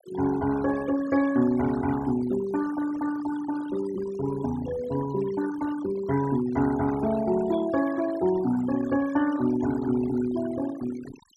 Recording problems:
denoising artefacts; signal-to-artefact ratio 14 dB

